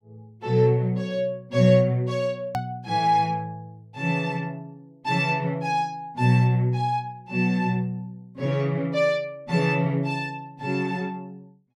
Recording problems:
click at an edit; at 2.5 s

